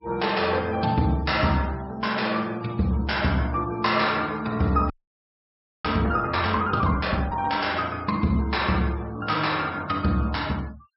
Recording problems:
treble cut off; nothing above 5.4 kHz
noise reduction artefacts; signal-to-artefact ratio 24 dB
frozen audio; at 5 s for 1 s

